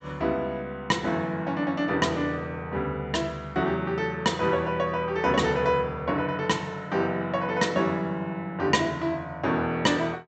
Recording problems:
treble missing; nothing above 8 kHz

